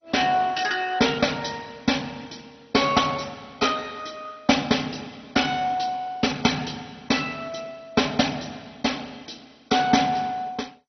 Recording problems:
lossy compression; MP2, log-spectral distance 6 dB, nothing above 6 kHz

